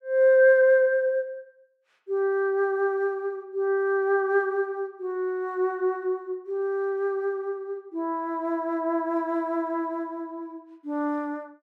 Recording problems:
none

